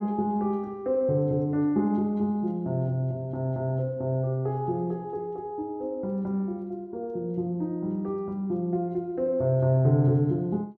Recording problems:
none

